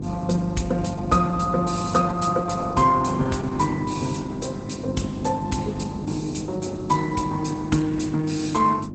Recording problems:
lossy codec; Opus, log-spectral distance 5 dB, nothing above 8 kHz
hum; 50 Hz, harmonics up to 350 Hz, SNR 8 dB
wind noise; below 330 Hz, SNR 13 dB

